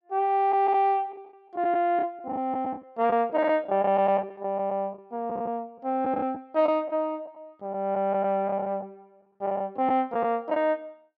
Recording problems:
lost packets; 8% of the sound replaced, filled with the last packet

